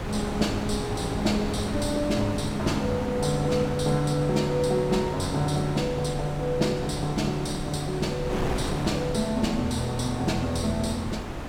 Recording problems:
wind noise; below 760 Hz, SNR 6 dB

